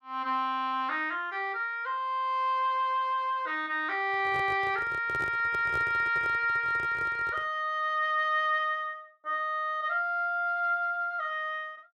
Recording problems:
microphone handling noise; from 4 to 7.5 s; peak -8 dB vs average level

